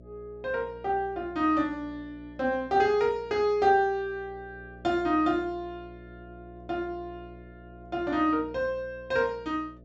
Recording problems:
low-pass filter; nothing above 8 kHz
electrical hum; 60 Hz, harmonics up to 660 Hz, SNR 21 dB

